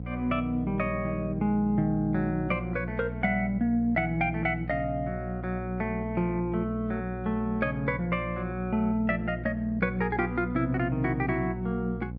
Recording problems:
hum; 60 Hz, harmonics up to 540 Hz, SNR 8 dB

